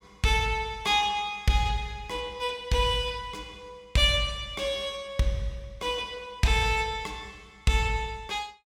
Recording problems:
none

